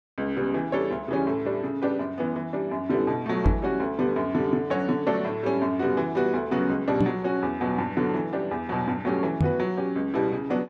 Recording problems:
microphone bump; at 3.5 s, at 7 s and at 9.5 s; peak +7 dB vs average level

